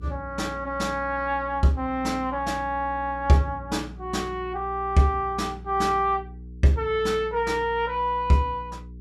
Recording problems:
electrical hum; 60 Hz, harmonics up to 420 Hz, SNR 16 dB

